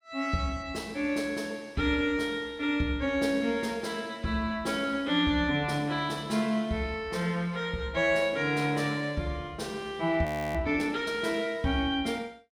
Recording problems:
frozen audio; at 10 s

